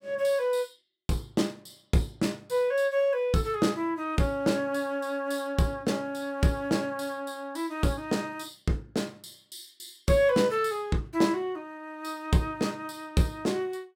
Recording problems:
none

